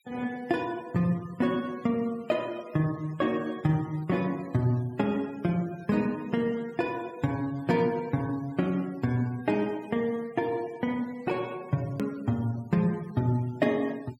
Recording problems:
noise reduction artefacts; signal-to-artefact ratio 24 dB
click at an edit; at 12 s

